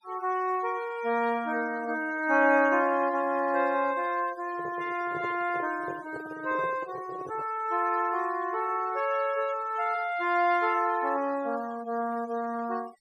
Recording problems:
noise reduction artefacts; signal-to-artefact ratio 20 dB
handling noise; from 4.5 to 7.5 s; peak -7 dB vs average level

